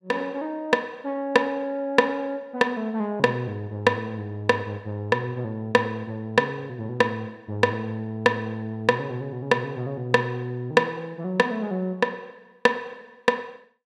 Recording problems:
none

